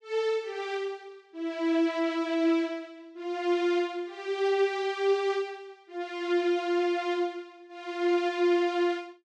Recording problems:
none

